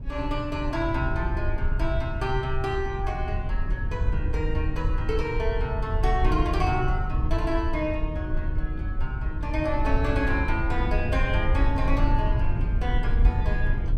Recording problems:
rumble; below 76 Hz, SNR -1 dB

